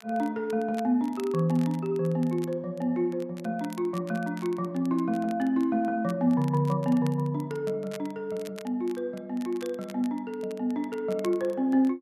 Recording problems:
crackling; vinyl, SNR 23 dB

